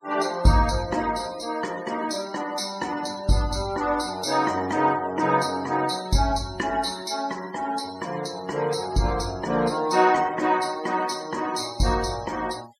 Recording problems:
denoising artefacts; signal-to-artefact ratio 19 dB

